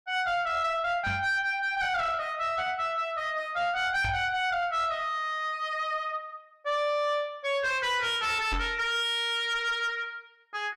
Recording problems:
distorted audio; soft clipping, signal-to-distortion ratio 10 dB
microphone thump; at 1 s, at 4 s and at 8.5 s; peak 0 dB vs average level

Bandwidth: 13 kHz